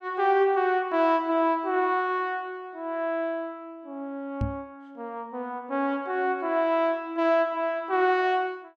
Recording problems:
knock on the microphone; at 4.5 s; peak 0 dB vs average level

